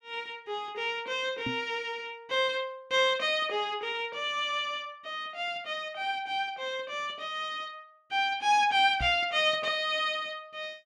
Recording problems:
microphone bump; at 1.5 s and at 9 s; peak -3 dB vs average level

